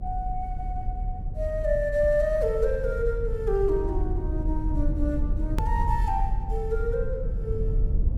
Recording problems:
rumble; below 66 Hz, strongest tone 38 Hz, SNR 2 dB
hard cut with a click; at 5.5 s

